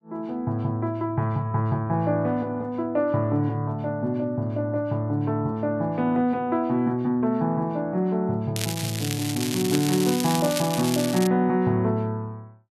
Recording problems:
crackle; from 8.5 to 11 s; loose cable, SNR 6 dB

